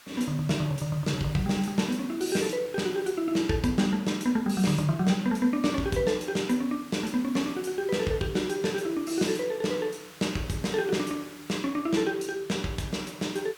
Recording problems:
background hiss; SNR 20 dB

